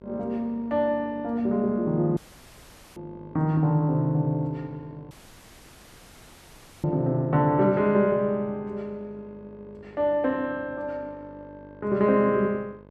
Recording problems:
hum; 50 Hz, harmonics up to 1.6 kHz, SNR 24 dB
audio cutting out; at 2 s for 1 s and at 5 s for 1.5 s

